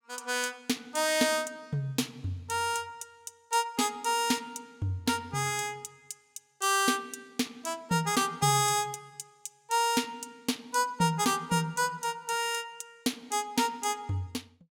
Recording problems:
none

